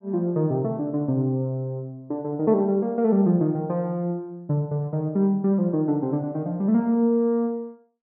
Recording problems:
none

